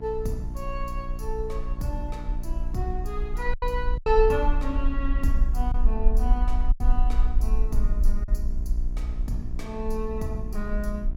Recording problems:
mains hum; 60 Hz, harmonics up to 1 kHz, SNR 10 dB
rumble; below 46 Hz, SNR -2 dB
lost packets; 3% of the sound replaced, filled with silence

